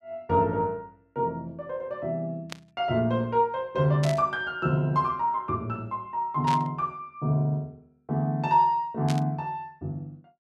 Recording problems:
static burst; 4 times, first at 2.5 s; peak -4 dB vs average level

